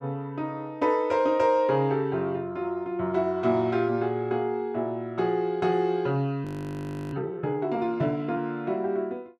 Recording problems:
frozen audio; at 6.5 s for 0.5 s

